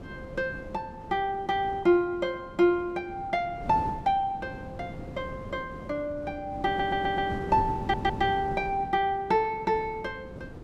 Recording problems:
wind noise; below 360 Hz, SNR 12 dB
audio stuttering; at 6.5 s and at 8 s

